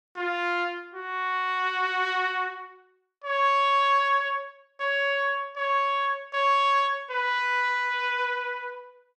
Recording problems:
none

